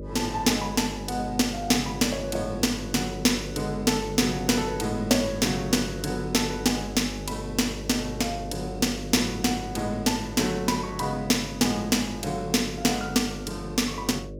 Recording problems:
electrical hum; 50 Hz, harmonics up to 600 Hz, SNR 11 dB

